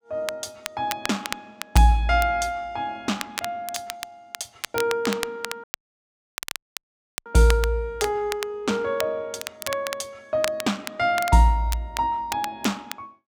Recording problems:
crackling; vinyl, SNR 10 dB
audio cutting out; at 5.5 s for 1.5 s

